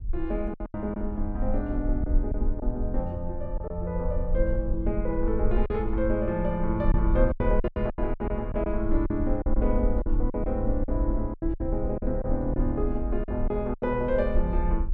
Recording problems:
low-frequency rumble; below 52 Hz, SNR 2 dB
packet loss; 9% of the sound replaced, filled with silence

